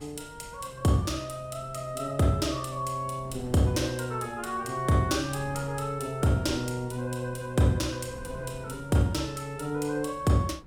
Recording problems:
wind noise; below 260 Hz, SNR 20 dB

